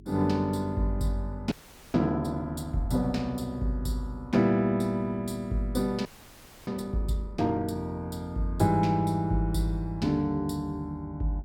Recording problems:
hum; 50 Hz, harmonics up to 400 Hz, SNR 22 dB
frozen audio; at 1.5 s and at 6 s for 0.5 s

